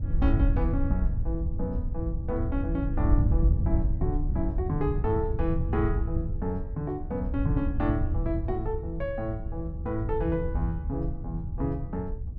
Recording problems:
wind on the microphone; below 94 Hz, SNR -1 dB

